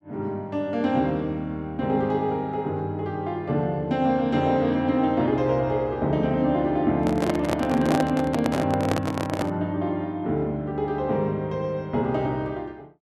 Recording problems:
handling noise; from 7 to 9.5 s; peak +2 dB vs average level

